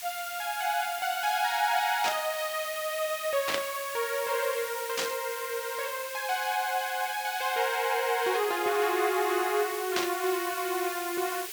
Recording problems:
background hiss; slope +3 dB per octave, SNR 9 dB
burst of static; 4 times, first at 2 s; peak +3 dB vs average level

